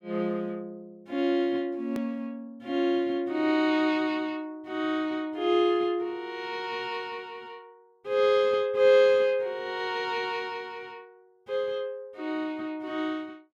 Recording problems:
edit click; at 2 s

